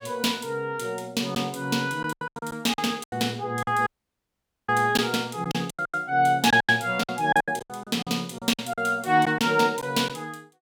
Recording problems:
lost packets; 12% of the sound replaced, filled with silence
dropout; at 4 s for 1 s

